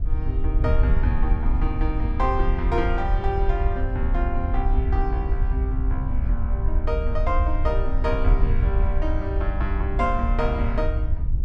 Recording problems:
wind on the microphone; below 64 Hz, SNR -4 dB

